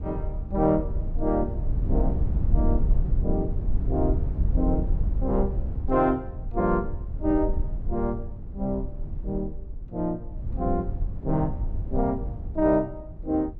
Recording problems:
low-frequency rumble; below 74 Hz, SNR 2 dB

